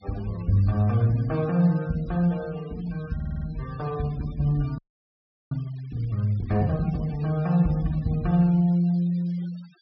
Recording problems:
treble cut off; nothing above 5.5 kHz
noise reduction artefacts; signal-to-artefact ratio 24 dB
stutter; at 3 s
frozen audio; at 5 s for 0.5 s

